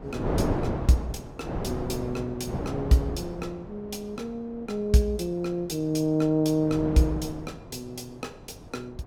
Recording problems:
wind noise; below 520 Hz, SNR 5 dB

